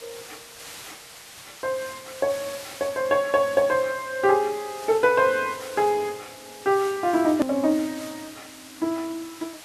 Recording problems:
hiss; slope 0 dB per octave, SNR 16 dB
edit click; at 7.5 s

